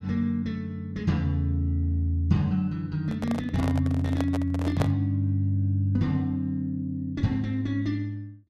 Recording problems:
microphone handling noise; from 3 to 5 s; peak +1 dB vs average level

